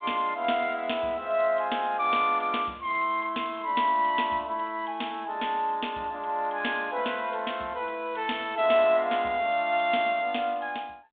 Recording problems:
telephone audio; 280 Hz to 3.7 kHz, G.726

